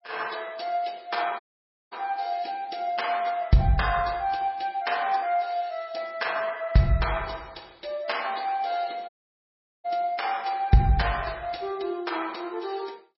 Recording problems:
lossy codec; MP3, log-spectral distance 5 dB, nothing above 5.5 kHz
dropout; at 1.5 s for 0.5 s and at 9 s for 1 s

